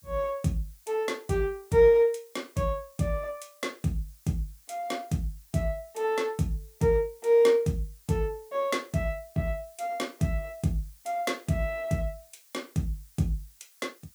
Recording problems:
hiss; slope +4 dB per octave, SNR 27 dB

